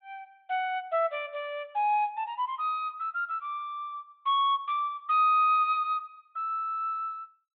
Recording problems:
low-pass filter; nothing above 4 kHz

